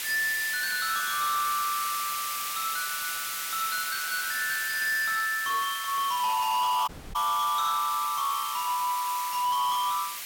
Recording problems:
distorted audio; hard clipping, signal-to-distortion ratio 12 dB
background hiss; SNR 5 dB
dropout; at 7 s

